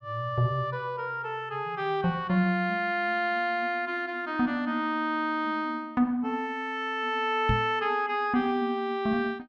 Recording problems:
microphone bump; at 7.5 s; peak +4 dB vs average level

